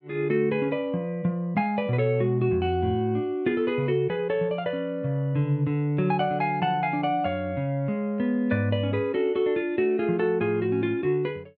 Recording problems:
none

